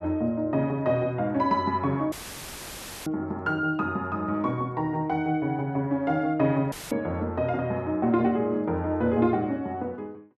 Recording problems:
dropout; at 2 s for 1 s and at 6.5 s; filled with static

